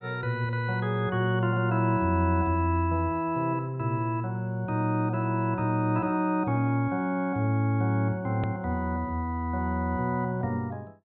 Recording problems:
treble cut off; nothing above 4 kHz
hard cut with a click; at 8.5 s

